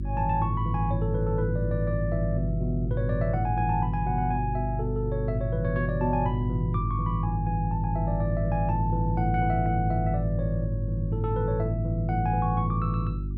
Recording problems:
hum; 50 Hz, harmonics up to 350 Hz, SNR 4 dB

